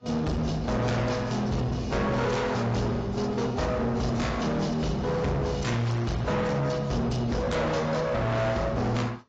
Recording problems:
codec artefacts; AAC, log-spectral distance 3 dB, nothing above 7.3 kHz
distortion; hard clipping, uneven, signal-to-distortion ratio 5 dB

